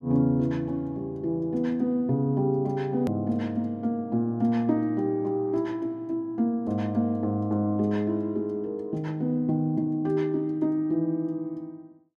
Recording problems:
hard cut with a click; at 3 s

